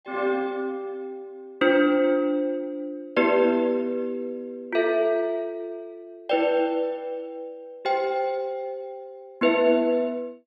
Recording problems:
none

